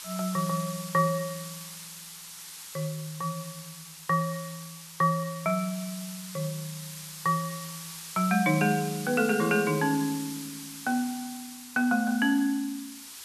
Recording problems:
background hiss; SNR 12 dB

